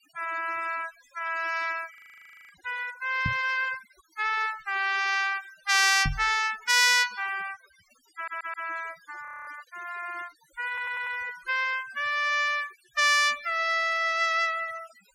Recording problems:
denoising artefacts; signal-to-artefact ratio 20 dB
frozen audio; at 2 s for 0.5 s and at 9.5 s
knock on the microphone; at 3.5 s and at 6 s; peak -1 dB vs average level
stutter; at 8 s and at 11 s

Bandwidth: 16.5 kHz